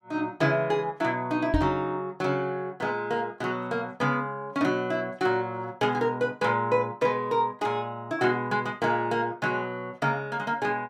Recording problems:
microphone thump; at 1.5 s; peak +6 dB vs average level

